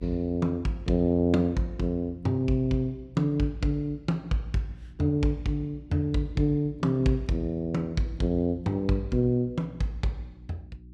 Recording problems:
hum; 60 Hz, harmonics up to 360 Hz, SNR 22 dB

